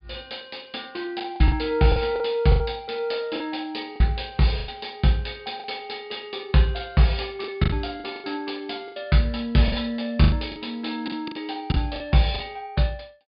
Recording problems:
treble cut off; nothing above 5 kHz
lost packets; 9% of the sound replaced, filled with the last packet

